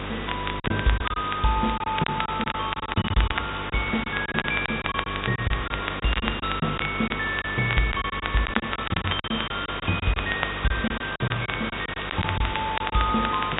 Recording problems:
treble missing; nothing above 4 kHz
hum; 50 Hz, harmonics up to 500 Hz, SNR 10 dB
background hiss; SNR 5 dB
crackling; vinyl, SNR 6 dB
lost packets; 11% of the sound replaced, filled with silence

